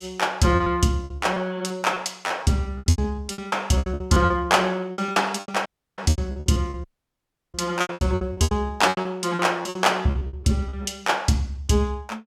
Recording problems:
packet loss; 19% of the sound replaced, filled with repeated pitch periods
audio cutting out; at 5.5 s and at 7 s for 0.5 s

